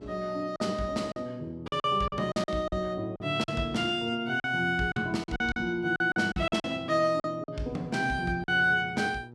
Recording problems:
electrical hum; 60 Hz, harmonics up to 960 Hz, SNR 21 dB
packet loss; 10% of the sound replaced, filled with silence

